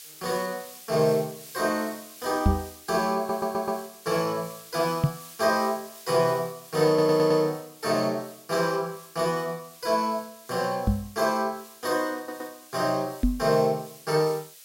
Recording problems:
hiss; slope +4 dB per octave, SNR 18 dB
microphone bump; 4 times, first at 2.5 s; peak +8 dB vs average level
audio stuttering; at 3 s, at 7 s and at 12 s

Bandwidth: 16 kHz